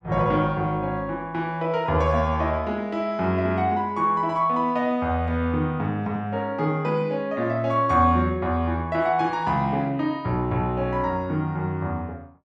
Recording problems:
none

